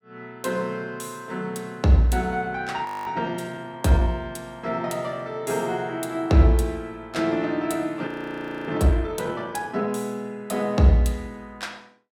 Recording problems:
audio freezing; at 3 s and at 8 s for 0.5 s

